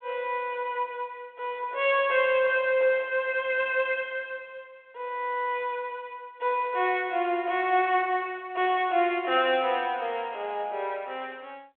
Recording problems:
phone line; 300 Hz to 3.4 kHz, G.726

